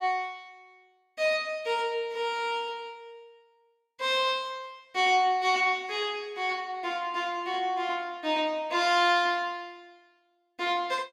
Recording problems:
none

